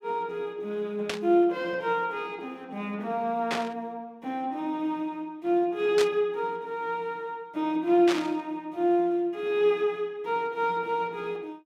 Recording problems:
static burst; 4 times, first at 1 s; peak +1 dB vs average level

